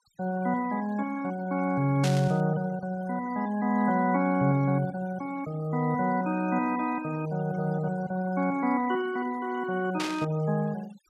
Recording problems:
denoising artefacts; signal-to-artefact ratio 21 dB
static burst; at 2 s and at 10 s; peak -1 dB vs average level

